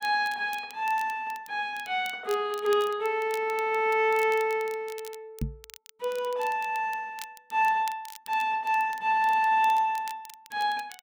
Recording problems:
crackle; vinyl, SNR 21 dB
microphone bump; at 5.5 s; peak 0 dB vs average level

